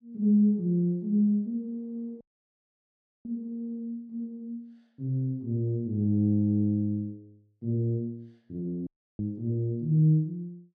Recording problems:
audio cutting out; at 2 s for 1 s and at 9 s

